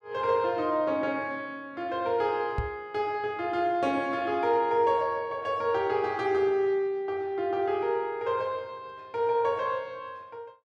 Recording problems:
microphone thump; at 2.5 s; peak 0 dB vs average level

